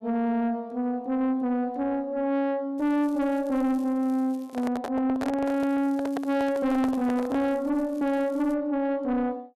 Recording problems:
distortion; soft clipping, signal-to-distortion ratio 10 dB
crackling; from 3 to 4.5 s and from 5.5 to 8.5 s; loose cable, SNR 30 dB
microphone handling noise; from 4.5 to 7.5 s; peak -3 dB vs average level

